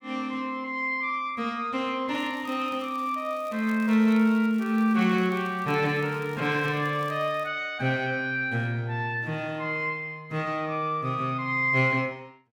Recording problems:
crackle; from 2 to 7.5 s; loose cable, SNR 26 dB

